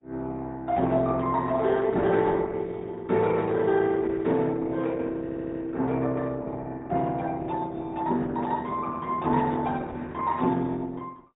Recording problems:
treble cut off; nothing above 3.8 kHz
lossy compression; Opus, log-spectral distance 3 dB
audio stuttering; at 5 s

